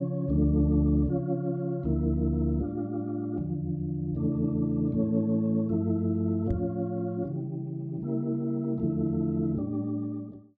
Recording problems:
microphone bump; at 6.5 s; peak +2 dB vs average level

